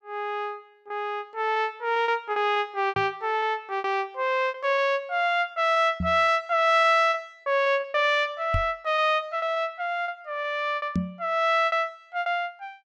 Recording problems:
packet loss; 10% of the sound replaced, filled with repeated pitch periods
knock on the microphone; 4 times, first at 3 s; peak +2 dB vs average level

